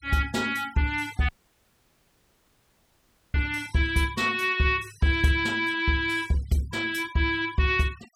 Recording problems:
noise reduction artefacts; signal-to-artefact ratio 23 dB
audio cutting out; at 1.5 s for 2 s

